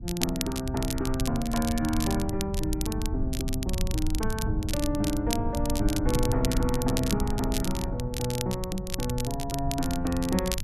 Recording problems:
low-frequency rumble; below 100 Hz, SNR 4 dB
crackling; vinyl, SNR 7 dB

